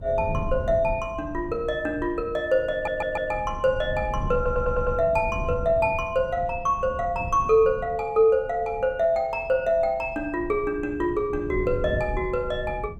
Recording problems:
wind noise; below 140 Hz, SNR 12 dB
audio stuttering; at 2.5 s and at 4.5 s

